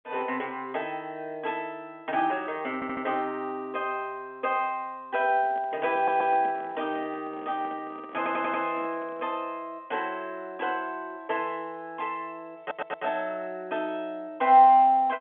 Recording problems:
telephone audio; 190 Hz to 3.4 kHz, G.711
audio stuttering; 4 times, first at 2.5 s
handling noise; from 5 to 9.5 s; peak -11 dB vs average level

